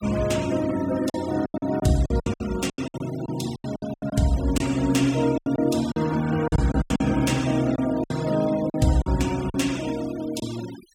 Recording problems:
noise reduction artefacts; signal-to-artefact ratio 17 dB
lost packets; 12% of the sound replaced, filled with silence

